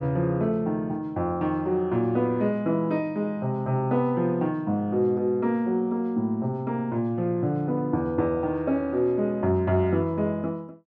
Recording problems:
none

